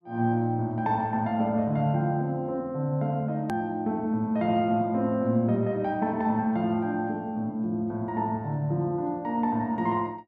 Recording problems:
click at an edit; at 3.5 s

